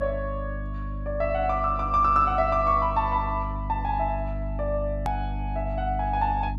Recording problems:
electrical hum; 50 Hz, harmonics up to 300 Hz, SNR 7 dB
edit click; at 5 s

